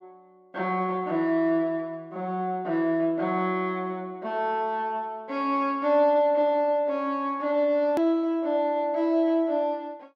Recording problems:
click at an edit; at 8 s

